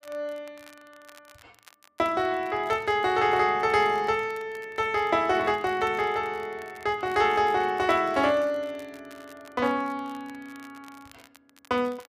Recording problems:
crackle; vinyl, SNR 28 dB

